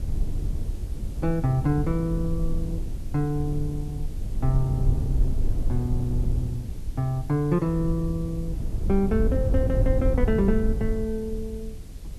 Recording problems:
background hiss; slope 0 dB per octave, SNR 25 dB
low-frequency rumble; below 82 Hz, SNR 2 dB

